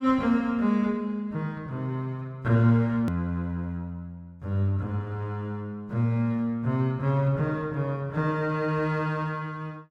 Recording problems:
hard cut with a click; at 3 s

